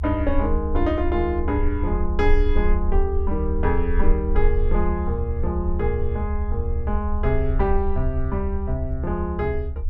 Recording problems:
rumble; below 68 Hz, strongest tone 22 Hz, SNR 0 dB

